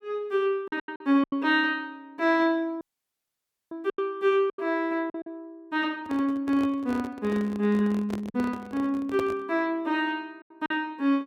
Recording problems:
packet loss; 6% of the sound replaced, filled with silence
dropout; at 3 s for 1 s
handling noise; from 6 to 9.5 s; peak -3 dB vs average level

